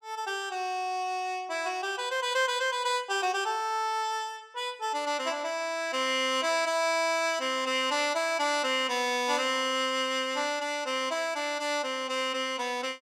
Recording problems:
none

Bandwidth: 17 kHz